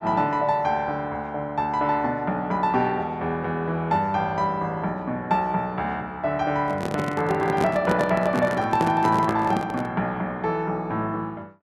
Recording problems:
handling noise; from 6.5 to 10 s; peak +1 dB vs average level

